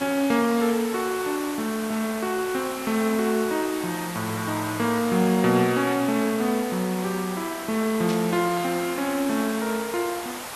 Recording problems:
background hiss; SNR 10 dB
burst of static; at 8 s; peak -6 dB vs average level

